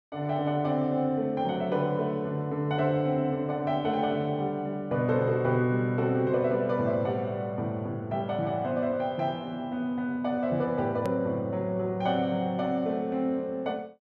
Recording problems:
hard cut with a click; at 11 s

